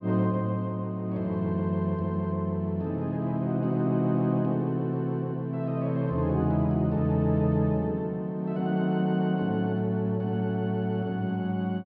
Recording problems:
treble cut off; nothing above 5.5 kHz

